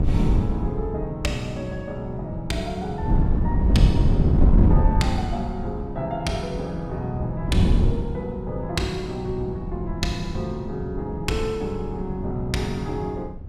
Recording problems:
wind noise; below 160 Hz, SNR -4 dB

